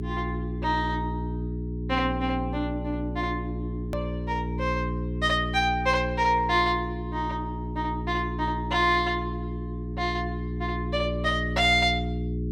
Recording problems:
electrical hum; 60 Hz, harmonics up to 420 Hz, SNR 5 dB
hard cut with a click; at 4 s

